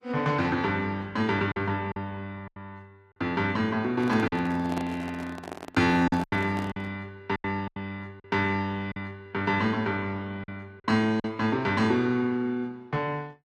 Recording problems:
codec artefacts; Opus, log-spectral distance 2 dB, nothing above 13.7 kHz
packet loss; 6% of the sound replaced, filled with silence
microphone handling noise; from 4 to 7 s; peak -3 dB vs average level

